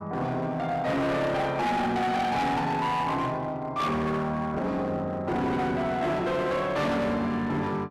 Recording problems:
distorted audio; hard clipping, uneven, signal-to-distortion ratio 7 dB

